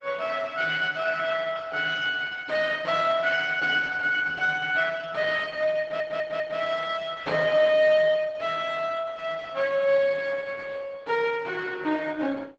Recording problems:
lossy codec; Opus, log-spectral distance 4 dB, nothing above 8 kHz
audio stuttering; at 6 s

